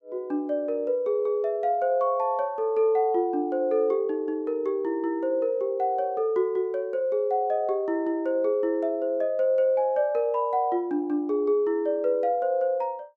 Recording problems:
none

